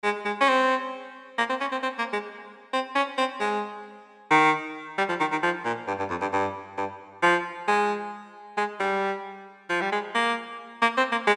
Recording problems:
none

